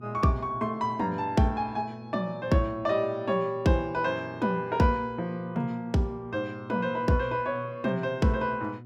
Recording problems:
hum; 60 Hz, harmonics up to 720 Hz, SNR 17 dB

